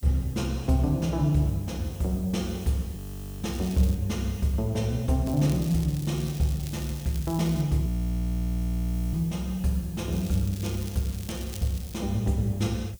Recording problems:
hiss; slope +6 dB per octave, SNR 21 dB
audio freezing; at 3 s and at 8 s for 1.5 s
crackle; at 3.5 s, from 5.5 to 7.5 s and from 10 to 12 s; loose cable, SNR 17 dB

